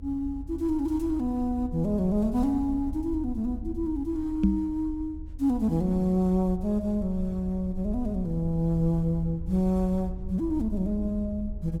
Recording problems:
rumble; below 74 Hz, SNR 11 dB
knock on the microphone; at 4.5 s; peak +8 dB vs average level

